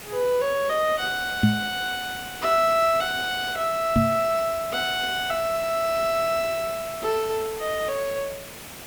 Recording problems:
hiss; slope -2 dB per octave, SNR 13 dB
microphone thump; at 1.5 s and at 4 s; peak +9 dB vs average level

